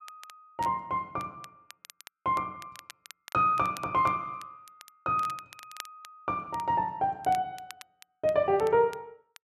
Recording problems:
crackle; vinyl, SNR 21 dB

